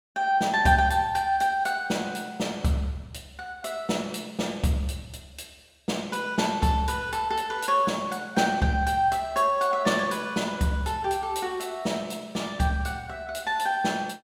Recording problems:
none

